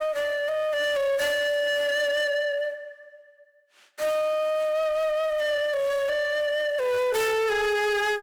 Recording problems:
distorted audio; soft clipping, signal-to-distortion ratio 6 dB

